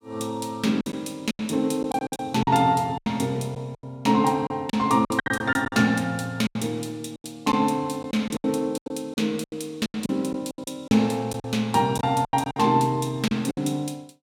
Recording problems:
packet loss; 13% of the sound replaced, filled with silence

